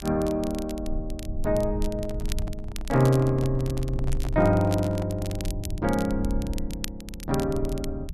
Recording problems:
low-frequency rumble; below 72 Hz, SNR 9 dB
crackle; vinyl, SNR 16 dB
handling noise; from 2 to 5.5 s; peak -9 dB vs average level

